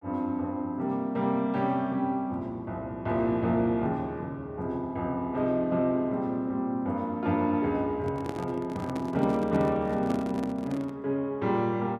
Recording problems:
microphone handling noise; from 8 to 11 s; peak -2 dB vs average level

